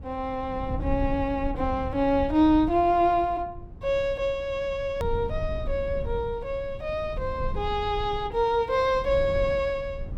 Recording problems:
rumble; below 98 Hz, SNR 11 dB
hard cut with a click; at 5 s

